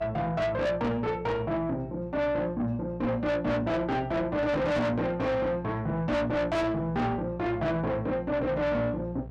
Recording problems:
distortion; soft clipping, signal-to-distortion ratio 6 dB
electrical hum; 60 Hz, harmonics up to 720 Hz, SNR 16 dB

